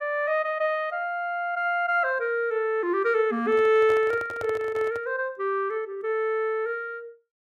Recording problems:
handling noise; from 3.5 to 5 s; peak -8 dB vs average level

